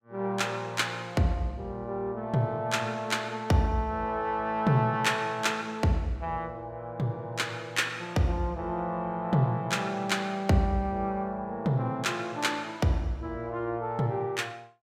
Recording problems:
none

